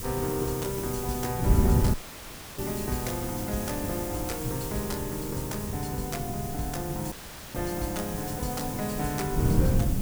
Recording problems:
background hiss; slope +2 dB per octave, SNR 5 dB
wind on the microphone; below 180 Hz, SNR 1 dB
dropout; at 2 s for 0.5 s and at 7 s; filled with static

